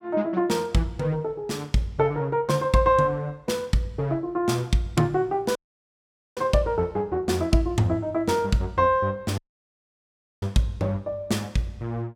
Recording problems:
audio cutting out; at 5.5 s for 1 s and at 9.5 s for 1 s

